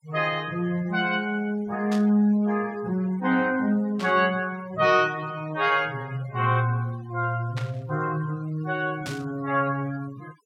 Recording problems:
denoising artefacts; signal-to-artefact ratio 21 dB
static burst; 4 times, first at 2 s; peak -7 dB vs average level

